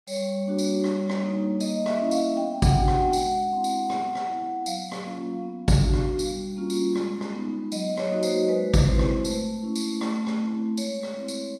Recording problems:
lossy compression; Vorbis, log-spectral distance 2 dB, nothing above 12.3 kHz

